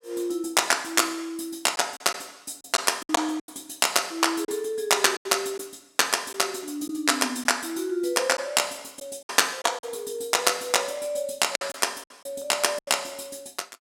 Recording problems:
lost packets; 6% of the sound replaced, filled with silence

